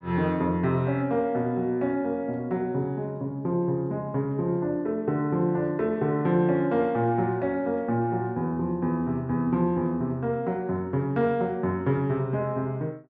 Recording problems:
none

